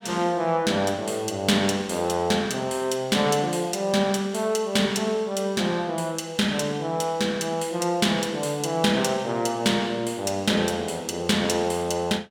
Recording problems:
none

